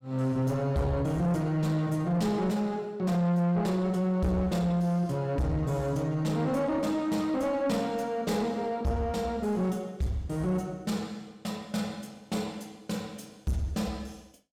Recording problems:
distortion; soft clipping, signal-to-distortion ratio 11 dB

